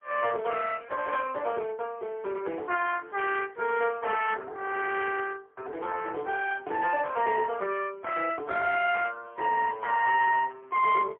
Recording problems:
telephone audio; 340 Hz to 3.1 kHz, AMR-NB, then MP3

